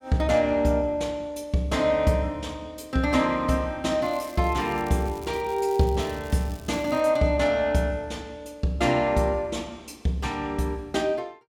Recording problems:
crackling; from 4 to 7 s; loose cable, SNR 23 dB

